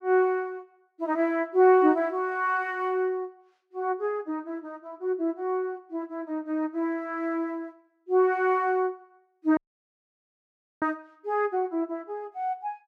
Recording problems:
audio cutting out; at 9.5 s for 1.5 s

